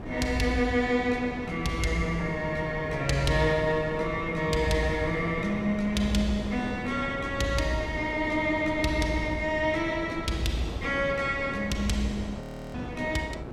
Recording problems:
wind noise; below 510 Hz, SNR 10 dB
frozen audio; at 12 s

